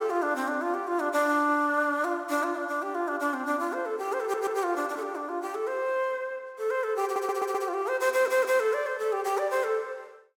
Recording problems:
audio stuttering; at 4 s, at 7 s and at 8 s

